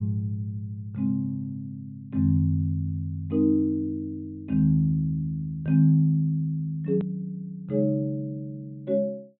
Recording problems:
treble cut off; nothing above 4 kHz
hard cut with a click; at 7 s

